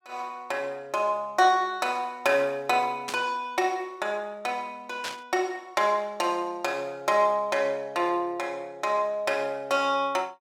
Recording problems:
static burst; at 3 s and at 5 s; peak -2 dB vs average level

